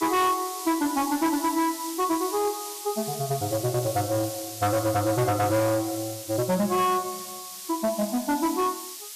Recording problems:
distortion; hard clipping, uneven, signal-to-distortion ratio 11 dB
background hiss; slope +5 dB per octave, SNR 9 dB

